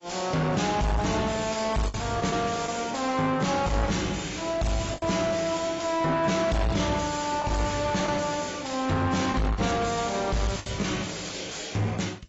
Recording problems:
lossy compression; AAC, log-spectral distance 7 dB, nothing above 7.6 kHz
distorted audio; soft clipping, signal-to-distortion ratio 6 dB
lost packets; 4% of the sound replaced, filled with the last packet

